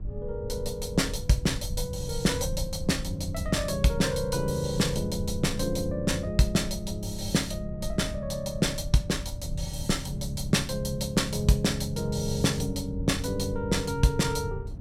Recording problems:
hum; 50 Hz, harmonics up to 600 Hz, SNR 22 dB
rumble; below 92 Hz, SNR 12 dB
wind noise; below 140 Hz, SNR 15 dB

